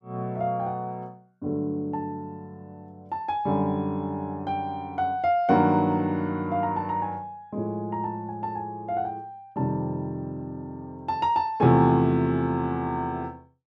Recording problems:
none

